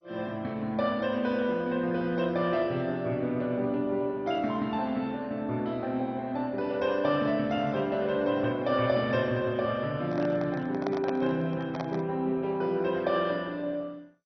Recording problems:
lossy codec; MP2, log-spectral distance 2 dB, nothing above 4.9 kHz
microphone handling noise; from 10 to 12 s; peak -1 dB vs average level

